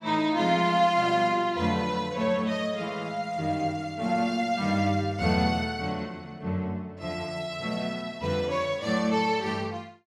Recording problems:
none

